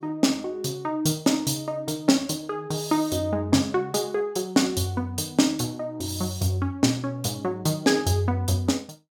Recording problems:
none

